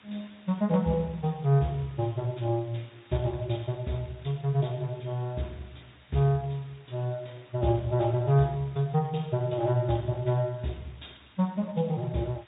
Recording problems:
treble missing; nothing above 3.8 kHz
lossy codec; Speex, log-spectral distance 11 dB
hiss; SNR 27 dB

